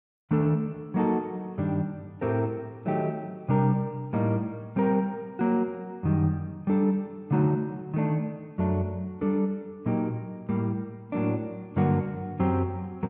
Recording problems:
none

